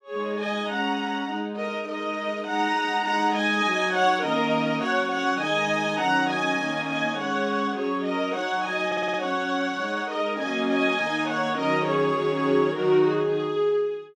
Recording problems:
stutter; at 9 s

